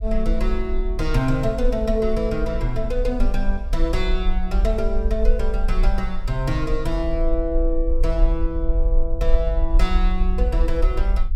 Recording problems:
rumble; below 44 Hz, strongest tone 22 Hz, SNR -1 dB

